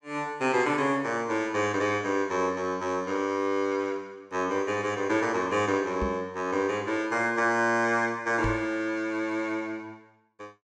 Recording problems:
knock on the microphone; at 6 s and at 8.5 s; peak -1 dB vs average level

